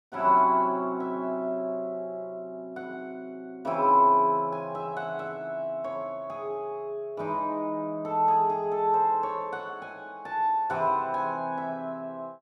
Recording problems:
none

